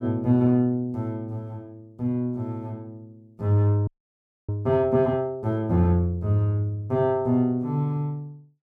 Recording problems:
frozen audio; at 4 s for 0.5 s

